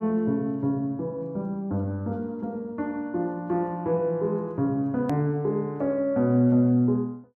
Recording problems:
click at an edit; at 5 s

